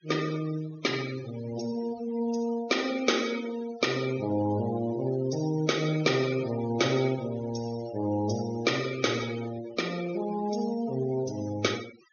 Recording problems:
treble cut off; nothing above 6.6 kHz
noise reduction artefacts; signal-to-artefact ratio 14 dB

